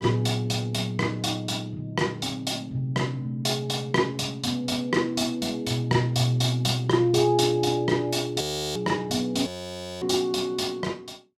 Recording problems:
frozen audio; at 8.5 s and at 9.5 s for 0.5 s

